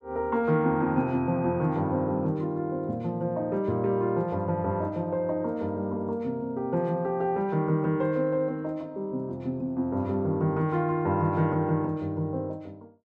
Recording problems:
none

